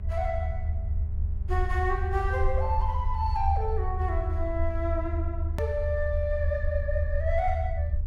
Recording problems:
hum; 50 Hz, harmonics up to 800 Hz, SNR 14 dB
rumble; below 78 Hz, SNR -1 dB
hard cut with a click; at 5.5 s

